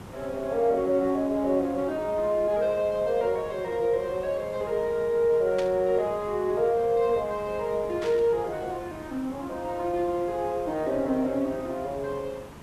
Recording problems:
background hiss; slope -6 dB per octave, SNR 17 dB
burst of static; at 5.5 s and at 8 s; peak -7 dB vs average level

